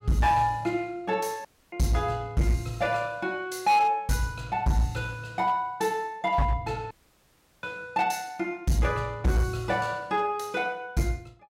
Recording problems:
distortion; hard clipping, signal-to-distortion ratio 10 dB
dropout; at 1.5 s and at 7 s for 0.5 s

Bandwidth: 16 kHz